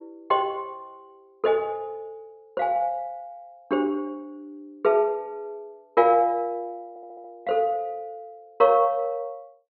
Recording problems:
treble missing; nothing above 5.5 kHz
audio stuttering; at 7 s

